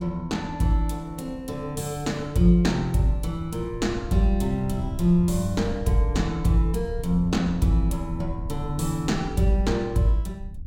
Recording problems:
wind noise; below 92 Hz, SNR 11 dB

